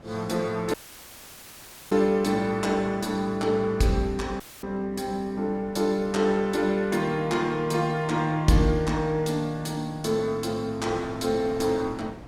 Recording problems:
hum; 60 Hz, harmonics up to 1.1 kHz, SNR 23 dB
wind on the microphone; below 780 Hz, SNR 22 dB
dropout; at 0.5 s for 1 s and at 4.5 s

